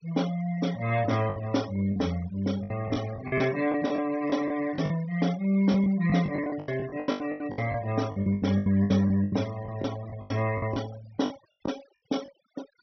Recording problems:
treble missing; nothing above 5.9 kHz
denoising artefacts; signal-to-artefact ratio 18 dB
lost packets; 15% of the sound replaced, filled with the last packet

